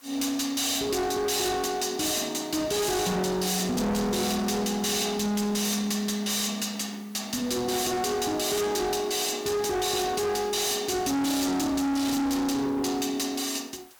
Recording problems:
distortion; hard clipping, signal-to-distortion ratio 7 dB
hiss; SNR 26 dB

